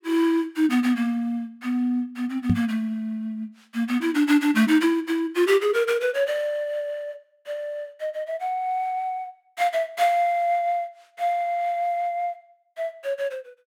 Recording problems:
knock on the microphone; at 2.5 s; peak +6 dB vs average level

